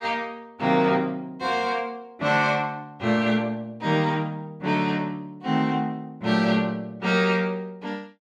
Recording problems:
none

